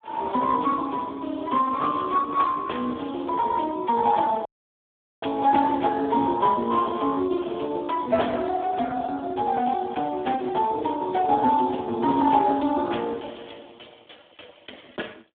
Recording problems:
phone line; 220 Hz to 3 kHz, Speex
dropout; at 4.5 s for 1 s

